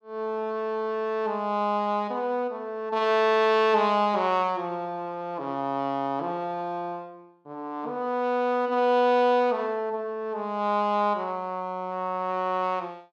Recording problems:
none

